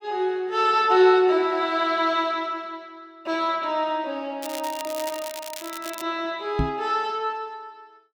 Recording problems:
crackle; from 4.5 to 6 s; loose cable, SNR 14 dB
knock on the microphone; at 6.5 s; peak +2 dB vs average level

